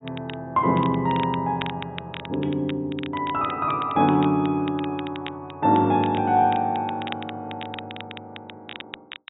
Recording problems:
treble missing; nothing above 4 kHz
crackling; vinyl, SNR 16 dB

